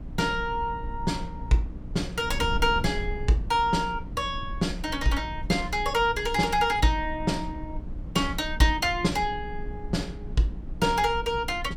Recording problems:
electrical hum; 60 Hz, harmonics up to 300 Hz, SNR 18 dB
wind on the microphone; below 80 Hz, SNR 11 dB

